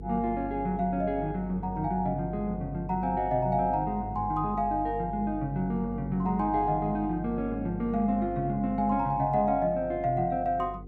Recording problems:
hum; 50 Hz, harmonics up to 500 Hz, SNR 12 dB

